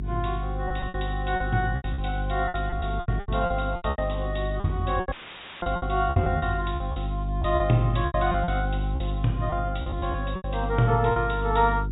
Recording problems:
treble cut off; nothing above 4 kHz
electrical hum; 50 Hz, harmonics up to 400 Hz, SNR 3 dB
packet loss; 14% of the sound replaced, filled with repeated pitch periods
dropout; at 5 s for 0.5 s; filled with static

